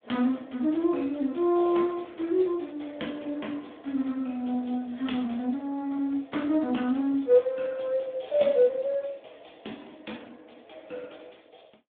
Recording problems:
phone line; 170 Hz to 3.5 kHz, Speex

